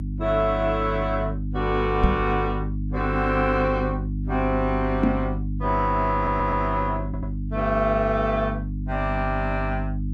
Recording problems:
hum; 50 Hz, harmonics up to 300 Hz, SNR 4 dB
knock on the microphone; at 2 s and at 5 s; peak +8 dB vs average level
stutter; at 6 s and at 7 s

